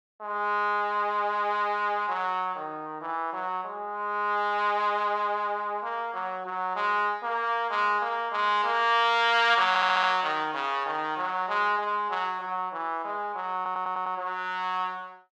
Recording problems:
audio stuttering; at 9.5 s and at 14 s

